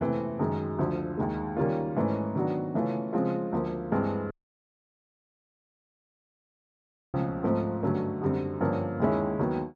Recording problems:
audio cutting out; at 4.5 s for 3 s

